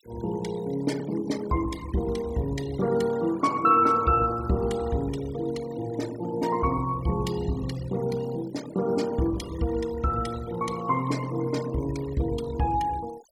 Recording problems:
denoising artefacts; signal-to-artefact ratio 18 dB

